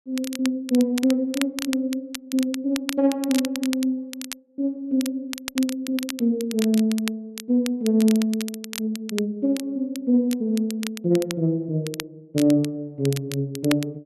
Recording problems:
crackling; vinyl, SNR 12 dB

